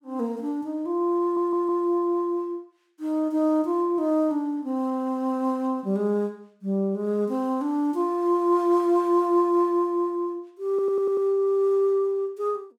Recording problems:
audio stuttering; at 1 s and at 11 s

